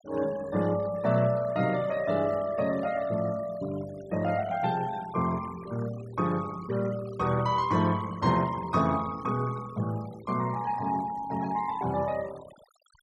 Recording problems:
denoising artefacts; signal-to-artefact ratio 20 dB

